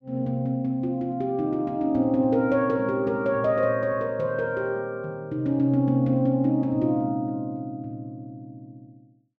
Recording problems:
none

